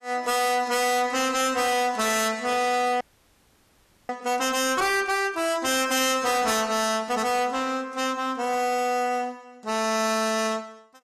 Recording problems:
lossy compression; AAC, log-spectral distance 3 dB, nothing above 13.8 kHz
distorted audio; hard clipping, signal-to-distortion ratio 6 dB
audio freezing; at 3 s for 1 s

